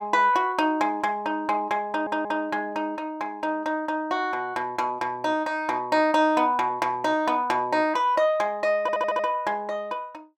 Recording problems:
stutter; at 2 s and at 9 s

